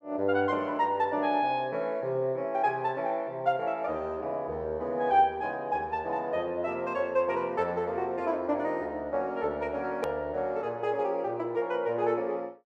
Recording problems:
hard cut with a click; at 10 s

